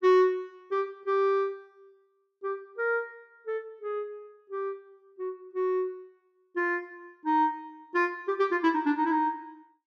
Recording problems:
none

